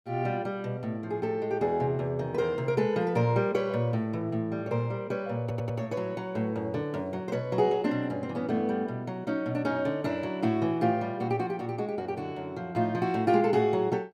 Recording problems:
stutter; at 5.5 s

